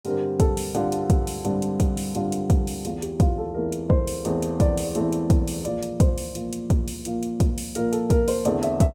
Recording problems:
none

